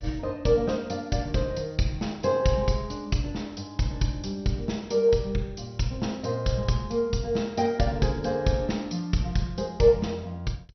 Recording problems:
lossy codec; MP2, log-spectral distance 4 dB, nothing above 6 kHz

